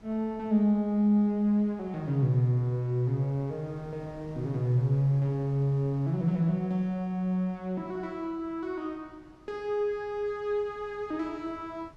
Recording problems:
wind on the microphone; below 490 Hz, SNR 25 dB

